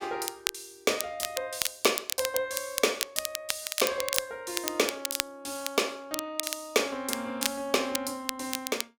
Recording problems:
crackle; vinyl, SNR 2 dB

